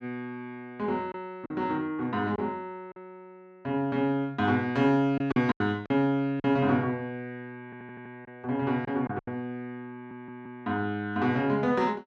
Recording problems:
lost packets; 4% of the sound replaced, filled with silence
stutter; at 7.5 s and at 10 s

